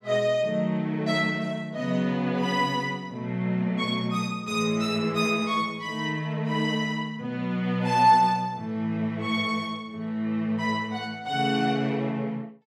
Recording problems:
none

